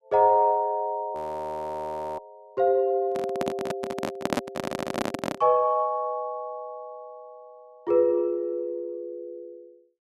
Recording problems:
frozen audio; at 1 s for 1 s
microphone handling noise; from 3 to 5.5 s; peak +4 dB vs average level
stutter; at 4.5 s

